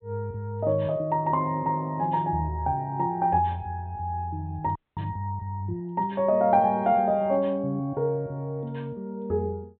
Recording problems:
low-pass filter; nothing above 4 kHz
frozen audio; at 5 s

